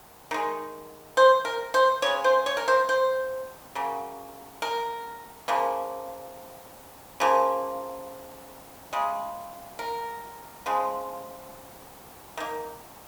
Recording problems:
hiss; SNR 21 dB

